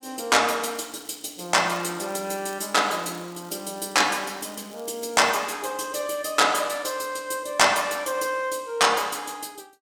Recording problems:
crackle; from 0.5 to 5.5 s; loose cable, SNR 24 dB

